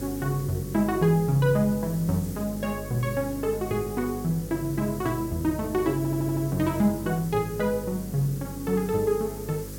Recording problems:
hum; 50 Hz, harmonics up to 550 Hz, SNR 12 dB
background hiss; SNR 16 dB
stutter; at 6 s

